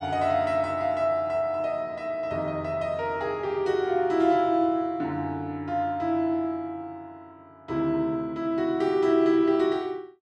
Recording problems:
none

